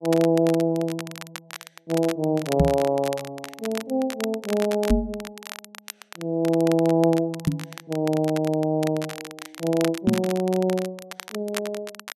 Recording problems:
crackling; vinyl, SNR 14 dB
microphone bump; 4 times, first at 2.5 s; peak +8 dB vs average level

